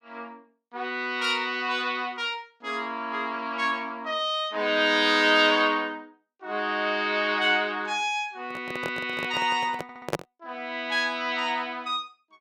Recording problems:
handling noise; from 8.5 to 10 s; peak +3 dB vs average level
audio stuttering; at 10 s

